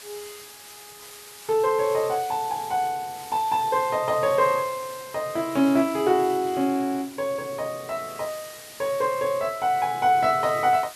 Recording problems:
background hiss; slope +1 dB per octave, SNR 17 dB

